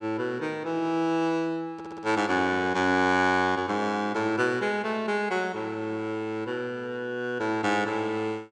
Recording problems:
stutter; at 1.5 s

